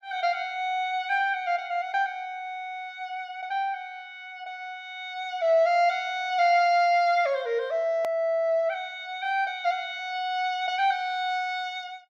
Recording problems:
edit click; at 8 s

